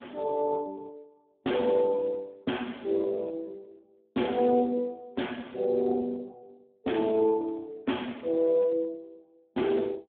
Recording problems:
telephone audio; 170 Hz to 3.6 kHz, Speex

